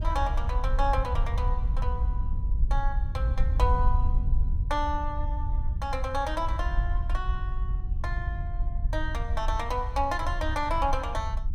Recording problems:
wind on the microphone; below 66 Hz, SNR -2 dB

